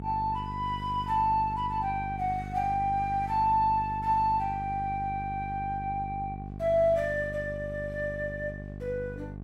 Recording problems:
electrical hum; 50 Hz, harmonics up to 800 Hz, SNR 10 dB

